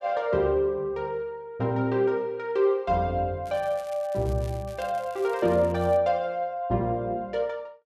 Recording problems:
crackling; from 3.5 to 6 s; loose cable, SNR 25 dB

